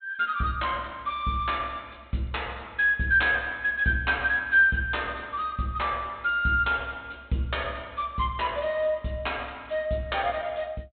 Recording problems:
treble cut off; nothing above 4 kHz

